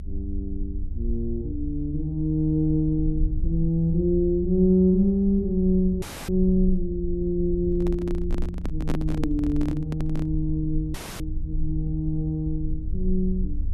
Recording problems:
rumble; below 68 Hz, strongest tone 20 Hz, SNR 8 dB
audio cutting out; at 6 s and at 11 s
microphone handling noise; from 7.5 to 10 s; peak -1 dB vs average level

